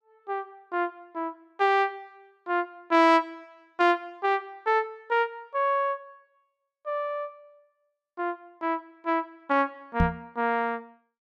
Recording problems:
microphone bump; at 10 s; peak +6 dB vs average level

